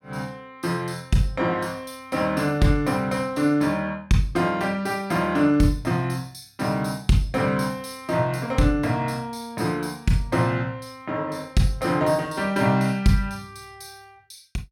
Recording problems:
none

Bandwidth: 16.5 kHz